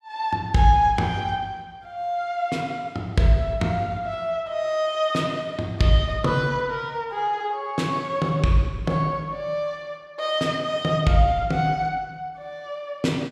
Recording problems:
none

